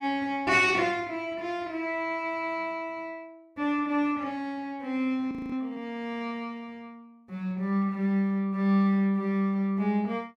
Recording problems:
audio freezing; at 5.5 s

